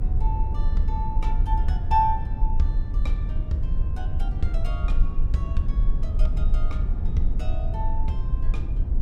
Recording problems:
rumble; below 52 Hz, strongest tone 22 Hz, SNR -4 dB

